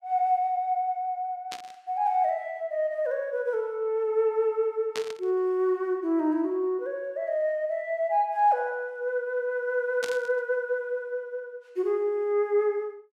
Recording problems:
static burst; at 1.5 s, at 5 s and at 10 s; peak -3 dB vs average level

